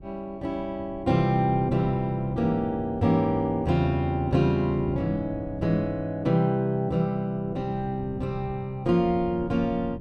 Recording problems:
wind on the microphone; below 190 Hz, SNR 16 dB

